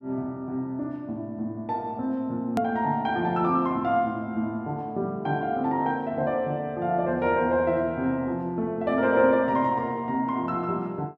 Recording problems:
hard cut with a click; at 2.5 s

